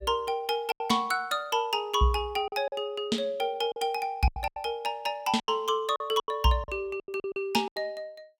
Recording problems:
packet loss; 10% of the sound replaced, filled with silence

